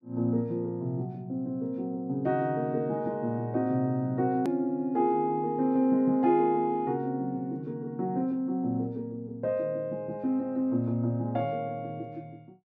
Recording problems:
click at an edit; at 4.5 s

